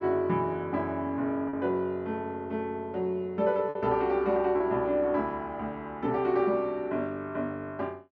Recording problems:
packet loss; 1.6% of the sound replaced, filled with repeated pitch periods

